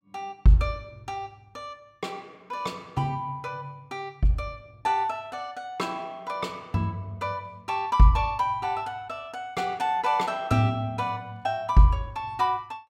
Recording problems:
none

